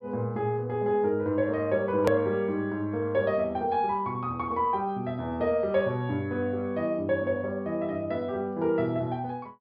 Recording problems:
treble cut off; nothing above 5.5 kHz
edit click; at 2 s

